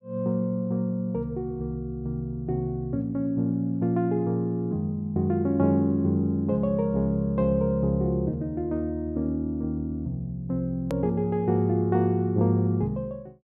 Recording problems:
click at an edit; at 11 s

